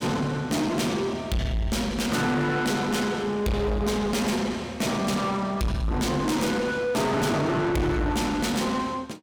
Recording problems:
distortion; soft clipping, signal-to-distortion ratio 7 dB

